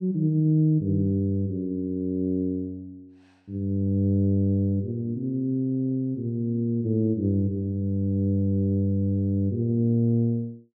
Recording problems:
none

